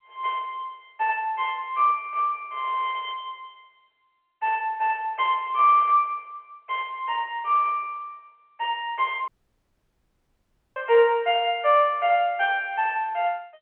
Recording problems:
telephone audio; 340 Hz to 3.1 kHz, G.711
dropout; at 9.5 s for 1.5 s

